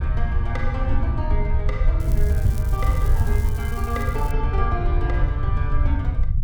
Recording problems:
rumble; below 82 Hz, SNR -4 dB
crackling; from 2 to 4.5 s; loose cable, SNR 15 dB

